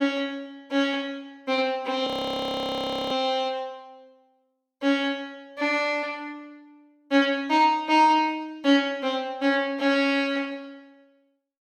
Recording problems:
audio freezing; at 2 s for 1 s

